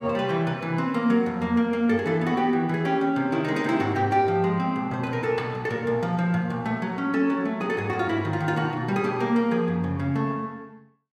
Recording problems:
none

